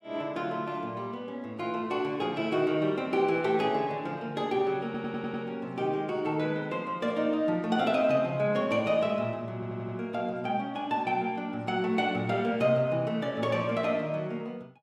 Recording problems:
audio stuttering; at 5 s and at 9.5 s

